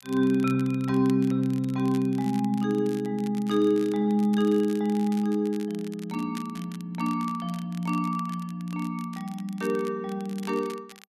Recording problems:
crackle; vinyl, SNR 22 dB

